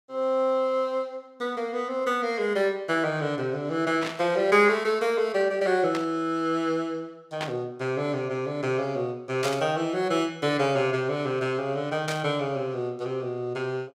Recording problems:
static burst; 5 times, first at 4 s; peak -1 dB vs average level

